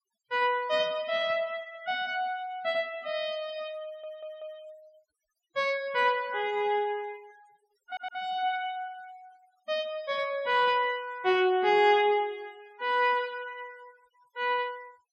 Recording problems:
noise reduction artefacts; signal-to-artefact ratio 26 dB
stutter; at 4 s and at 8 s

